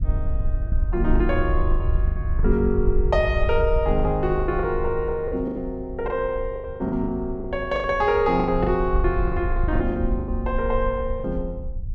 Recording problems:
wind noise; below 62 Hz, SNR 4 dB
packet loss; 12% of the sound replaced, filled with the last packet

